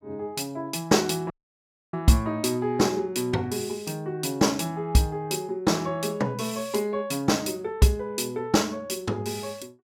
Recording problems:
dropout; at 1.5 s for 0.5 s

